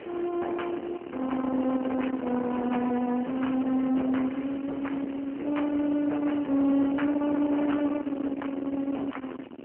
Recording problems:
phone line; 190 Hz to 3.1 kHz, AMR-NB
distorted audio; soft clipping, signal-to-distortion ratio 9 dB
hiss; SNR 17 dB
wind on the microphone; below 540 Hz, SNR 9 dB

